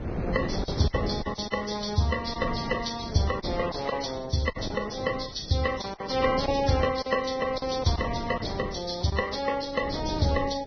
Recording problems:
lossy codec; Vorbis, then Vorbis, log-spectral distance 6 dB, nothing above 6 kHz
wind on the microphone; below 420 Hz, SNR 8 dB
packet loss; 6% of the sound replaced, filled with silence

